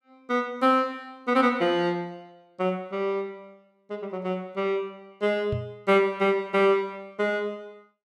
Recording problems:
knock on the microphone; at 5.5 s; peak -2 dB vs average level

